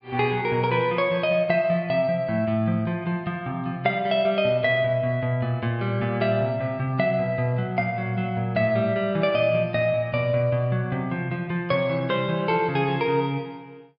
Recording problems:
treble missing; nothing above 5.2 kHz

